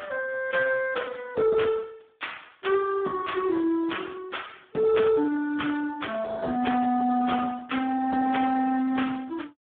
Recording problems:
telephone audio; 190 Hz to 3.6 kHz, Speex

